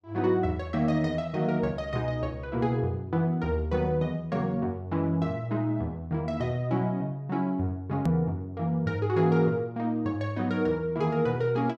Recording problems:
hard cut with a click; at 8 s

